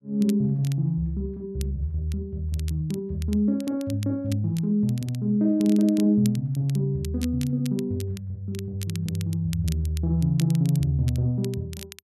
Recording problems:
crackle; vinyl, SNR 19 dB

